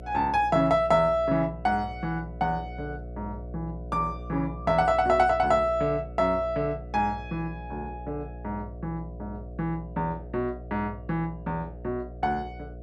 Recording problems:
hum; 60 Hz, harmonics up to 720 Hz, SNR 13 dB

